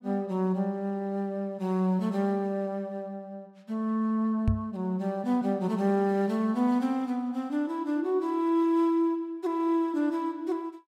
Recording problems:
microphone thump; at 4.5 s; peak +5 dB vs average level

